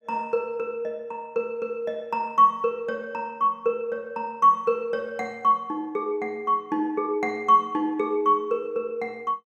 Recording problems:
none

